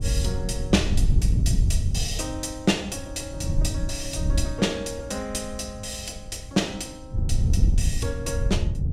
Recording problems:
wind on the microphone; below 100 Hz, SNR -3 dB

